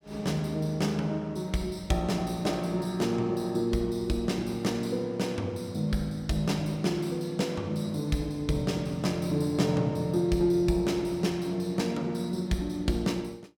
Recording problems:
none

